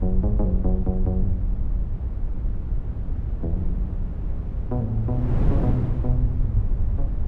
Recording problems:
rumble; below 68 Hz, SNR 0 dB
wind noise; below 170 Hz, SNR 3 dB

